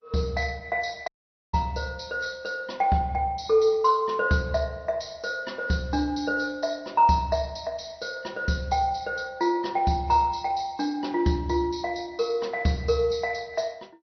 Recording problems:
lossy codec; MP3, then MP2, log-spectral distance 4 dB, nothing above 6 kHz
audio cutting out; at 1 s

